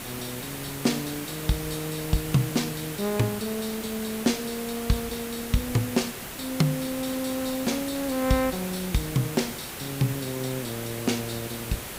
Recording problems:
background hiss; slope -3 dB per octave, SNR 6 dB

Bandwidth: 15.5 kHz